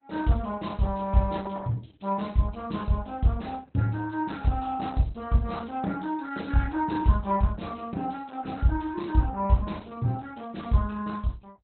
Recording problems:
lossy codec; Opus, log-spectral distance 5 dB, nothing above 4.1 kHz

